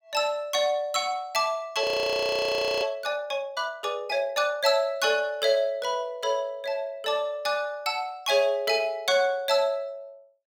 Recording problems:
audio freezing; at 2 s for 1 s

